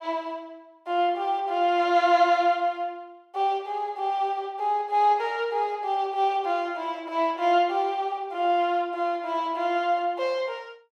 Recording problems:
none

